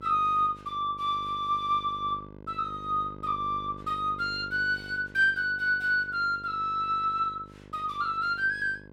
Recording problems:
hum; 50 Hz, harmonics up to 1.6 kHz, SNR 19 dB

